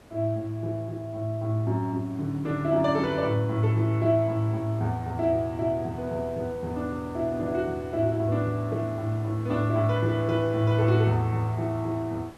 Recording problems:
hiss; slope -6 dB per octave, SNR 22 dB

